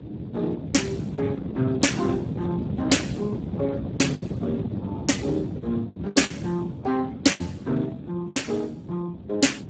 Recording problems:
lossy compression; Speex, log-spectral distance 4 dB, nothing above 7.8 kHz
wind on the microphone; below 300 Hz, SNR 6 dB
lost packets; 6% of the sound replaced, filled with the last packet

